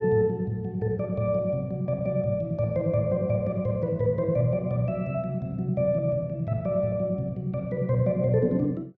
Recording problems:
none

